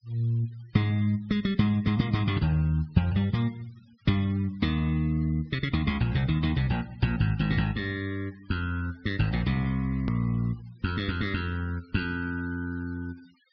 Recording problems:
treble cut off; nothing above 5.5 kHz
denoising artefacts; signal-to-artefact ratio 25 dB
edit click; at 10 s

